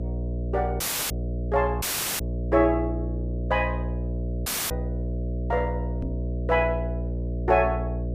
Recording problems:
hum; 60 Hz, harmonics up to 660 Hz, SNR 4 dB
audio cutting out; at 1 s, at 2 s and at 4.5 s
microphone thump; at 6 s; peak -1 dB vs average level

